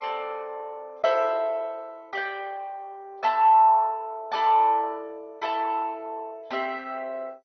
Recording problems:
lossy codec; MP2, log-spectral distance 3 dB, nothing above 5.3 kHz

